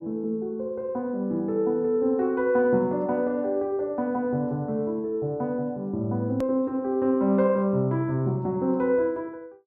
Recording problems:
click at an edit; at 6.5 s

